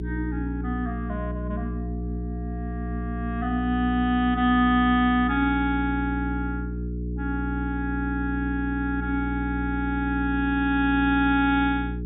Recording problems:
treble cut off; nothing above 4 kHz
electrical hum; 60 Hz, harmonics up to 420 Hz, SNR 6 dB

